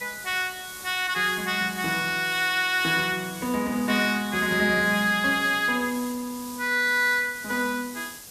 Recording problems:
background hiss; SNR 14 dB

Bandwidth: 14.5 kHz